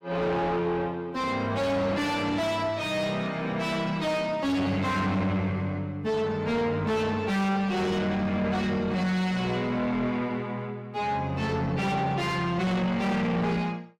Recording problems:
distorted audio; soft clipping, signal-to-distortion ratio 5 dB

